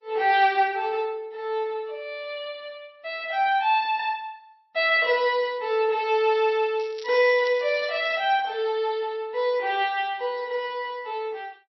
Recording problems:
lossy codec; MP3, log-spectral distance 2 dB, nothing above 4.6 kHz
crackling; from 7 to 8 s; loose cable, SNR 21 dB

